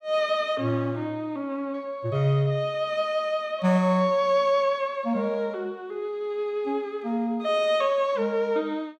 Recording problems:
none

